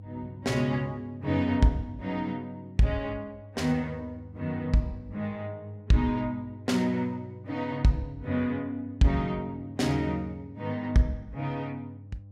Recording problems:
hum; 50 Hz, harmonics up to 500 Hz, SNR 17 dB

